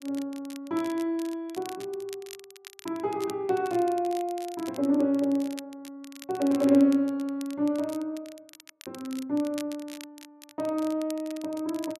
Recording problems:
crackle; vinyl, SNR 19 dB

